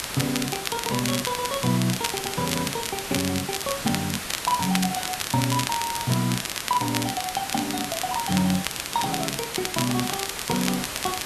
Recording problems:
hiss; slope -1 dB per octave, SNR 4 dB
crackling; vinyl, SNR 4 dB

